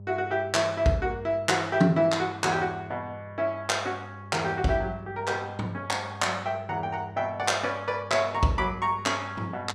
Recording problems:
hum; 50 Hz, harmonics up to 600 Hz, SNR 16 dB

